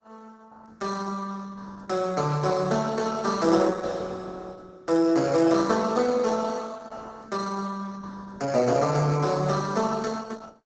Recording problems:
treble cut off; nothing above 8 kHz
lossy codec; Opus, log-spectral distance 5 dB

